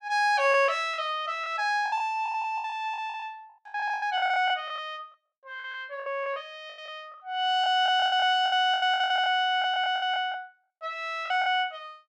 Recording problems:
lost packets; 16% of the sound replaced, filled with the last packet

